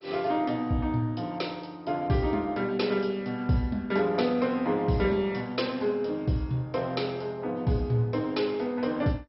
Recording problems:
lossy compression; MP2, log-spectral distance 3 dB, nothing above 5.5 kHz

